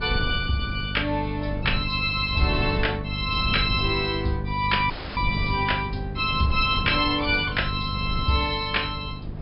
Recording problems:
treble cut off; nothing above 5.5 kHz
electrical hum; 50 Hz, harmonics up to 500 Hz, SNR 9 dB
wind noise; below 150 Hz, SNR 9 dB
dropout; at 5 s

